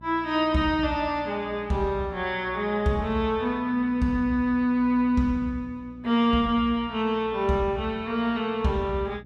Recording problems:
electrical hum; 60 Hz, harmonics up to 600 Hz, SNR 22 dB

